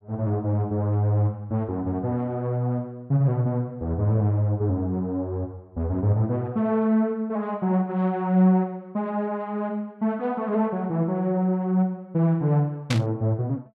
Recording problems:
static burst; at 13 s; peak 0 dB vs average level

